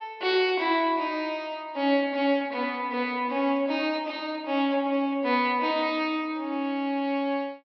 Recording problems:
treble cut off; nothing above 5.5 kHz

